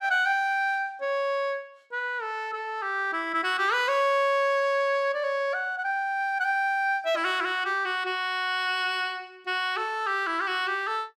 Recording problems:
none

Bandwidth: 14.5 kHz